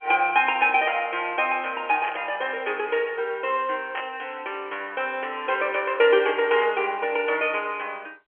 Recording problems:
telephone audio; 340 Hz to 3.2 kHz, G.711
burst of static; at 2 s, at 4 s and at 6.5 s; peak -5 dB vs average level

